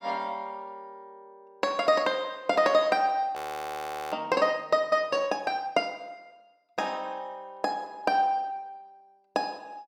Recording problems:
audio freezing; at 3.5 s for 1 s

